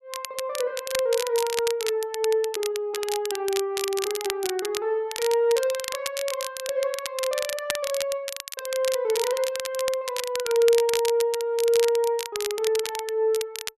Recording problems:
crackling; vinyl, SNR 7 dB

